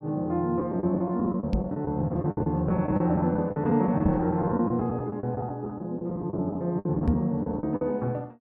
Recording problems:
packet loss; 15% of the sound replaced, filled with the last packet
microphone bump; at 1.5 s, at 4 s and at 7 s; peak +4 dB vs average level

